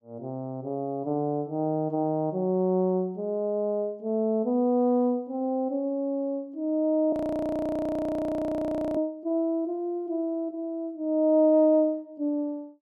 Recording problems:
audio freezing; at 7 s for 2 s

